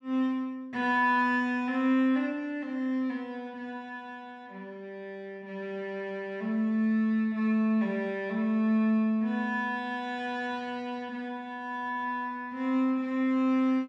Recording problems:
none

